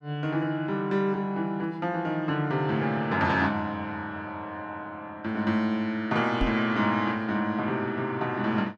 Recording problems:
microphone thump; at 6.5 s; peak +4 dB vs average level

